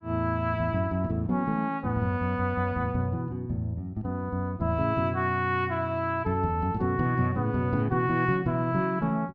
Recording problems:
none

